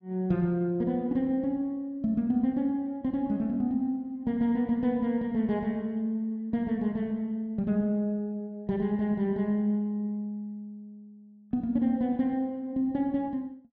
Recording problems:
none

